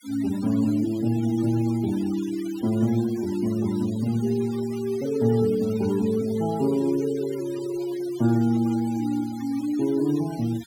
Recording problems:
denoising artefacts; signal-to-artefact ratio 20 dB

